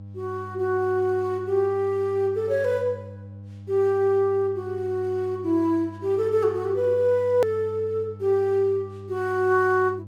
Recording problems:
hum; 50 Hz, harmonics up to 500 Hz, SNR 17 dB
click at an edit; at 7.5 s

